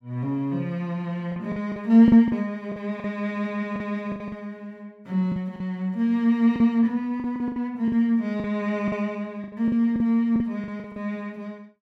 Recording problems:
packet loss; 10% of the sound replaced, filled with the last packet

